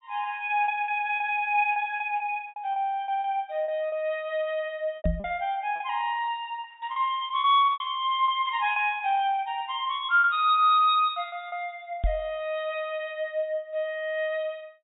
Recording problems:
low-pass filter; nothing above 4 kHz
lost packets; 8% of the sound replaced, filled with repeated pitch periods
microphone bump; at 5 s and at 12 s; peak +2 dB vs average level

